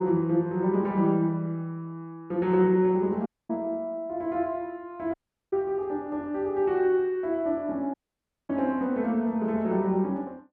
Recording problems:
dropout; at 3.5 s, at 5 s and at 8 s for 0.5 s

